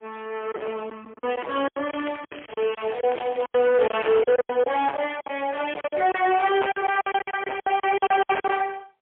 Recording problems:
telephone audio; 300 Hz to 3.3 kHz, AMR-NB, then MP3
distortion; hard clipping, signal-to-distortion ratio 10 dB
lost packets; 15% of the sound replaced, filled with silence
crackle; from 2 to 4 s; loose cable, SNR 17 dB

